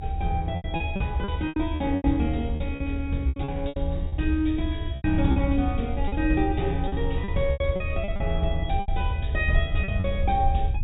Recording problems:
treble missing; nothing above 4 kHz
rumble; below 78 Hz, SNR 2 dB
packet loss; 12% of the sound replaced, filled with repeated pitch periods

